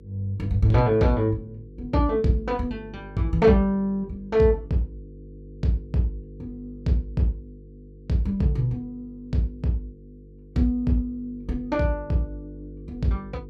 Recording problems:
electrical hum; 50 Hz, harmonics up to 500 Hz, SNR 19 dB

